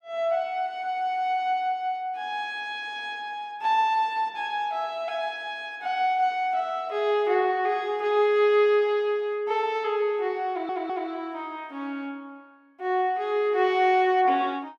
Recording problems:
stutter; at 10 s

